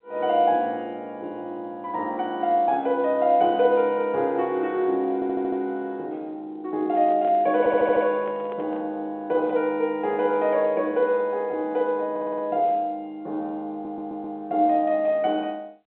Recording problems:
phone line; 240 Hz to 3.5 kHz, G.711
stutter; 4 times, first at 5 s
microphone handling noise; from 7 to 9 s; peak -11 dB vs average level

